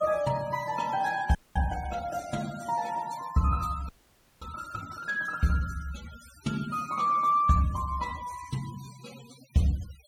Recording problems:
denoising artefacts; signal-to-artefact ratio 18 dB
audio freezing; at 1.5 s and at 4 s for 0.5 s

